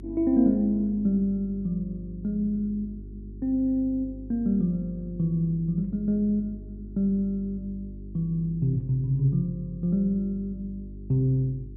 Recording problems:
electrical hum; 50 Hz, harmonics up to 400 Hz, SNR 15 dB

